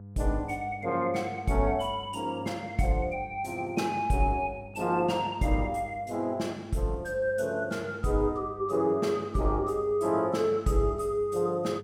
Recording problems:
hum; 50 Hz, harmonics up to 700 Hz, SNR 19 dB

